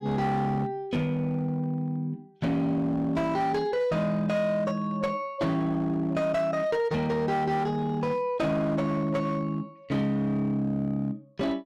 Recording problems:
distortion; hard clipping, signal-to-distortion ratio 12 dB

